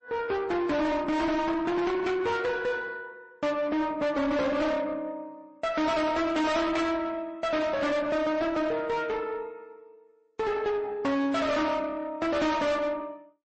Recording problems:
codec artefacts; MP3, then MP3, log-spectral distance 2 dB, nothing above 8 kHz
distorted audio; soft clipping, signal-to-distortion ratio 7 dB

